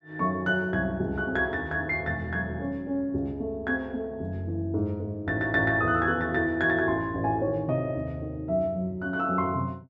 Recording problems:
none

